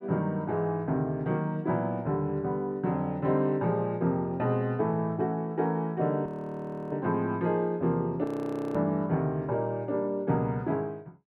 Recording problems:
frozen audio; at 6.5 s for 0.5 s and at 8 s for 0.5 s

